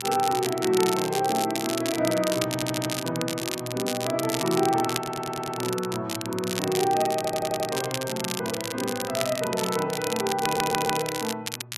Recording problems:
electrical hum; 60 Hz, harmonics up to 600 Hz, SNR 19 dB
crackling; vinyl, SNR 5 dB
audio stuttering; 4 times, first at 2.5 s

